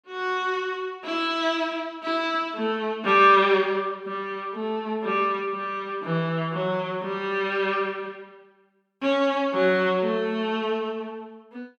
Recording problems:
none

